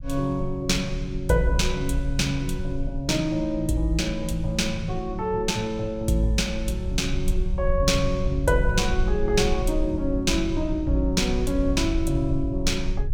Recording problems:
rumble; below 62 Hz, SNR 7 dB

